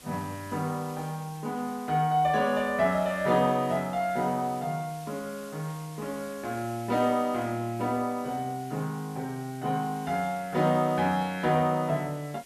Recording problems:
background hiss; slope -1 dB per octave, SNR 20 dB

